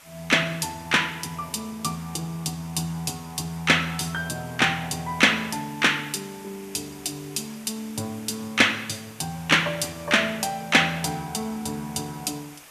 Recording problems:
background hiss; SNR 21 dB

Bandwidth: 14.5 kHz